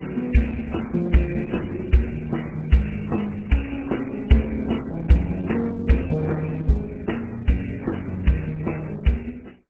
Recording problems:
codec artefacts; MP3, then Opus, log-spectral distance 6 dB, nothing above 7.8 kHz

